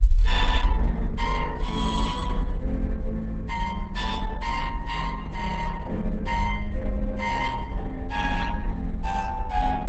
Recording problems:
lossy codec; Opus, log-spectral distance 2 dB, nothing above 8 kHz
rumble; below 58 Hz, SNR 3 dB

